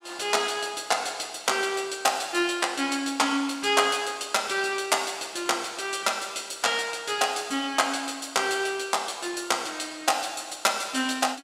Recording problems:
none

